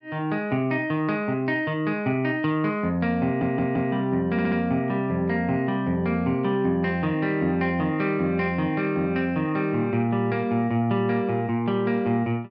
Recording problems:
stutter; at 3.5 s and at 4.5 s

